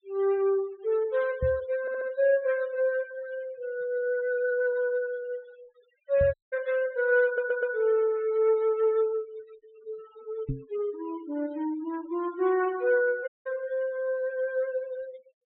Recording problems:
low-pass filter; nothing above 4 kHz
denoising artefacts; signal-to-artefact ratio 22 dB
knock on the microphone; at 1.5 s, at 6 s and at 10 s; peak 0 dB vs average level
audio stuttering; at 2 s and at 7.5 s
dropout; at 6.5 s and at 13 s

